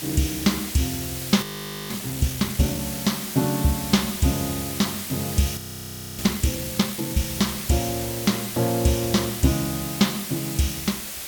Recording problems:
background hiss; SNR 6 dB
audio freezing; at 1.5 s and at 5.5 s for 0.5 s

